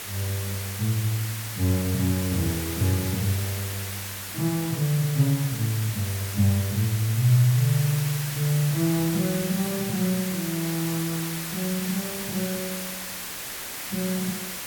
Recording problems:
hiss; slope 0 dB per octave, SNR 6 dB

